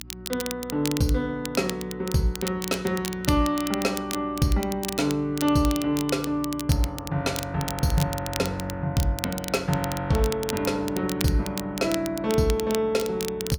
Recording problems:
hum; 60 Hz, harmonics up to 300 Hz, SNR 21 dB
crackling; vinyl, SNR 10 dB

